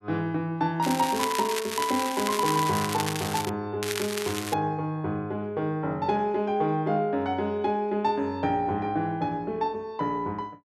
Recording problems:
crackling; from 1 to 3.5 s and at 4 s; loose cable, SNR 5 dB

